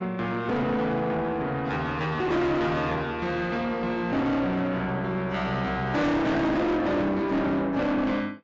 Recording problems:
lossy codec; AAC, log-spectral distance 2 dB, nothing above 7.3 kHz
distorted audio; soft clipping, signal-to-distortion ratio 6 dB

